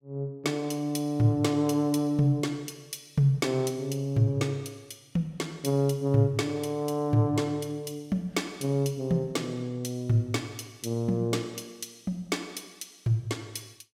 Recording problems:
none

